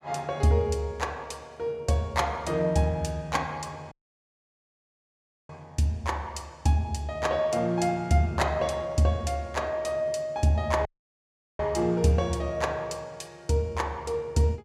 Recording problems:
dropout; at 4 s for 1.5 s and at 11 s for 0.5 s

